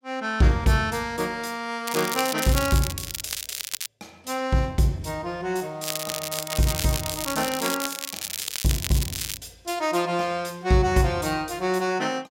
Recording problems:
crackling; from 2 to 4 s and from 6 to 9.5 s; loose cable, SNR 5 dB

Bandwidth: 16 kHz